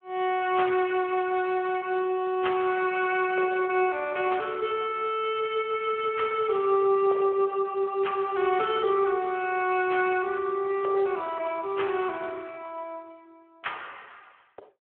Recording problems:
phone line; 300 Hz to 3.3 kHz, Speex

